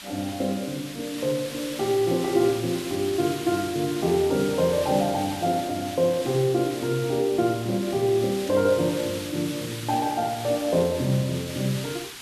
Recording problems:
background hiss; SNR 11 dB
static burst; at 8.5 s; peak -13 dB vs average level

